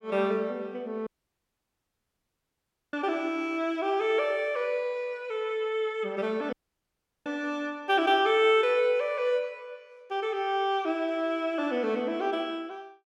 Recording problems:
dropout; at 1 s for 2 s and at 6.5 s for 0.5 s

